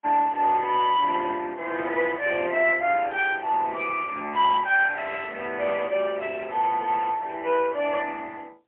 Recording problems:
phone line; 300 Hz to 3.3 kHz, AMR-NB, then MP3

